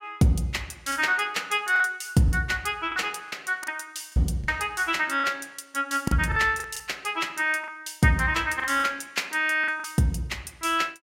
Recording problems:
packet loss; 7% of the sound replaced, filled with the last packet

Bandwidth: 16 kHz